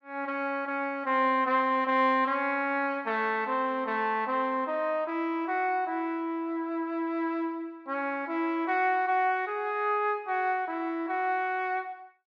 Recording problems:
none

